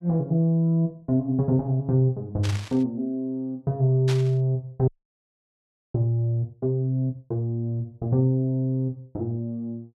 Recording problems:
burst of static; at 2.5 s and at 4 s; peak -5 dB vs average level
audio freezing; at 5 s for 1 s

